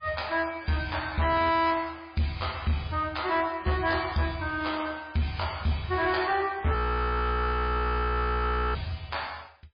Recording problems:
codec artefacts; MP3, log-spectral distance 5 dB, nothing above 4.6 kHz
distorted audio; hard clipping, signal-to-distortion ratio 12 dB
frozen audio; at 7 s for 2 s

